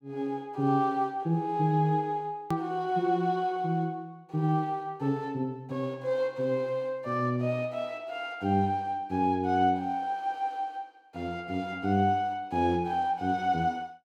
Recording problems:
edit click; at 2.5 s

